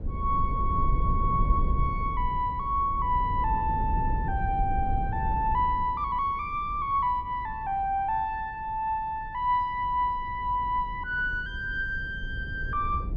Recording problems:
wind noise; below 92 Hz, SNR 6 dB

